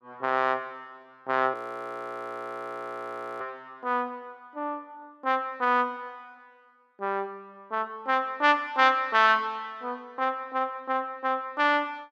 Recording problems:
audio freezing; at 1.5 s for 2 s

